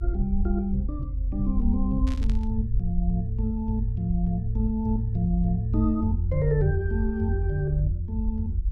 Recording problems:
rumble; below 74 Hz, strongest tone 46 Hz, SNR 2 dB
burst of static; at 2 s; peak -12 dB vs average level

